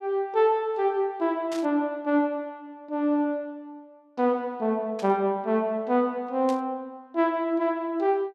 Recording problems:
burst of static; at 1.5 s, at 5 s and at 6.5 s; peak -10 dB vs average level

